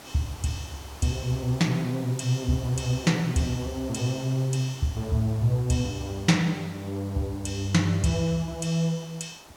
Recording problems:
background hiss; SNR 19 dB

